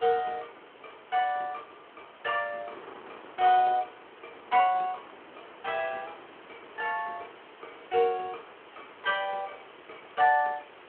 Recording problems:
telephone audio; 320 Hz to 3.3 kHz, Speex
background hiss; SNR 24 dB
wind noise; below 1.3 kHz, SNR 23 dB

